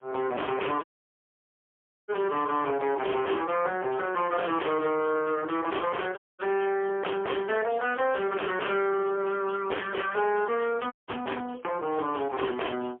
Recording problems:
telephone audio; 300 Hz to 2.8 kHz, AMR-NB, then MP3
distortion; soft clipping, signal-to-distortion ratio 7 dB
dropout; at 1 s for 1 s, at 6 s and at 11 s

